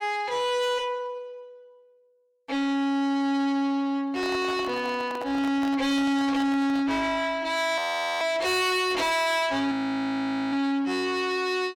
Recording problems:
distortion; soft clipping, signal-to-distortion ratio 8 dB
microphone handling noise; from 4 to 7 s; peak -6 dB vs average level
audio freezing; at 8 s and at 9.5 s for 1 s

